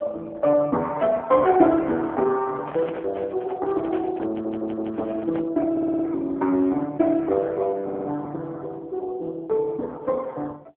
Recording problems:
telephone audio; 220 Hz to 2.3 kHz, AMR-NB
microphone handling noise; from 2.5 to 5.5 s; peak -9 dB vs average level
stutter; at 4.5 s, at 5.5 s and at 8 s

